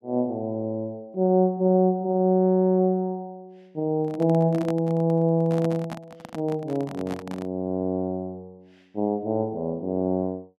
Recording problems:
handling noise; from 4 to 7.5 s; peak -6 dB vs average level

